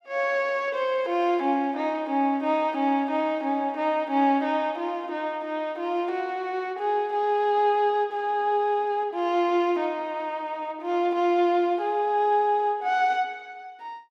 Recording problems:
none

